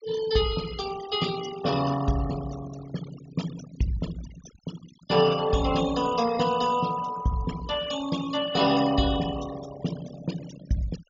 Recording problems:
treble cut off; nothing above 7.2 kHz
noise reduction artefacts; signal-to-artefact ratio 13 dB

